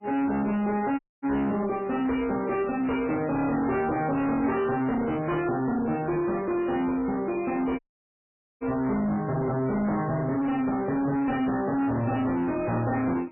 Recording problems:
lossy compression; MP3, log-spectral distance 3 dB, nothing above 2.6 kHz
distorted audio; soft clipping, signal-to-distortion ratio 8 dB
dropout; at 1 s and at 8 s for 1 s

